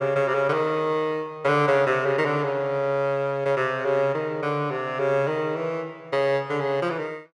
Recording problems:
none

